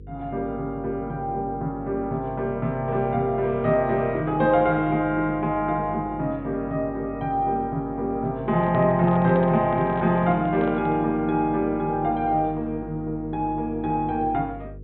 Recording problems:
low-pass filter; nothing above 4 kHz
electrical hum; 50 Hz, harmonics up to 500 Hz, SNR 18 dB
handling noise; from 8.5 to 11 s; peak -7 dB vs average level

